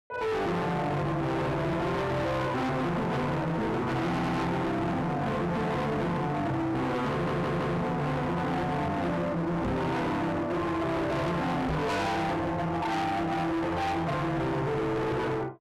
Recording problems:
distorted audio; hard clipping, signal-to-distortion ratio 6 dB
stutter; at 4 s and at 7 s
microphone bump; at 9.5 s and at 12 s; peak +3 dB vs average level

